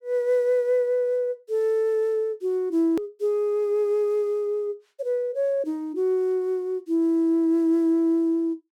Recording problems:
edit click; at 3 s

